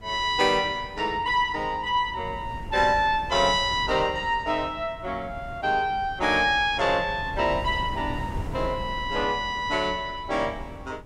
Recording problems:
wind noise; below 200 Hz, SNR 15 dB

